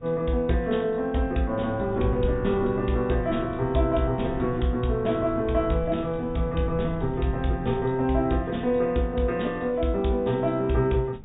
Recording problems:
treble missing; nothing above 4 kHz
wind on the microphone; below 150 Hz, SNR 14 dB

